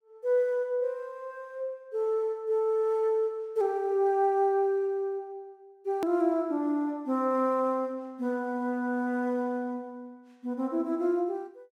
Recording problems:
click at an edit; at 6 s

